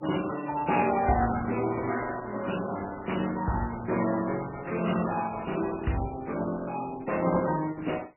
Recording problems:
codec artefacts; Opus, then MP3, log-spectral distance 8 dB, nothing above 2.9 kHz

